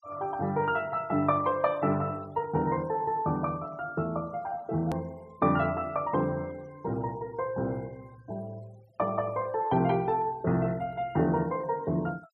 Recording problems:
denoising artefacts; signal-to-artefact ratio 27 dB
click at an edit; at 5 s

